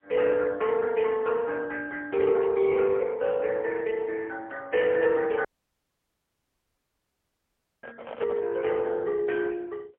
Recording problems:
telephone audio; 340 Hz to 3.4 kHz, AMR-NB, then MP3
dropout; at 5.5 s for 2.5 s
microphone handling noise; at 8 s; peak -6 dB vs average level

